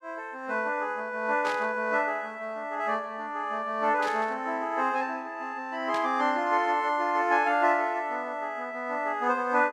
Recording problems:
static burst; at 1.5 s, at 4 s and at 6 s; peak -7 dB vs average level

